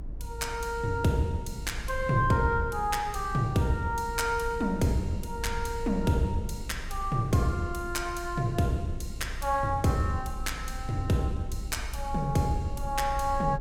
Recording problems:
low-frequency rumble; below 60 Hz, strongest tone 26 Hz, SNR 10 dB

